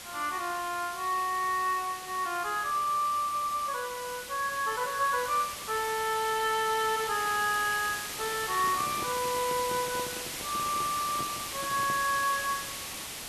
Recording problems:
background hiss; slope 0 dB per octave, SNR 7 dB
handling noise; from 8.5 to 12 s; peak -6 dB vs average level

